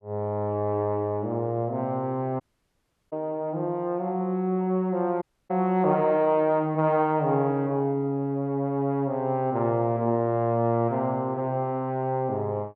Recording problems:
audio cutting out; at 2.5 s for 0.5 s and at 5 s

